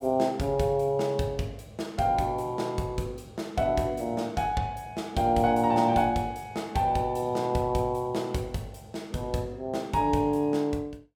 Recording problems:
none

